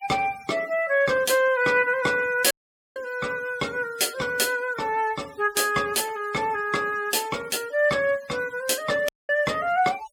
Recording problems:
denoising artefacts; signal-to-artefact ratio 21 dB
dropout; at 2.5 s and at 9 s

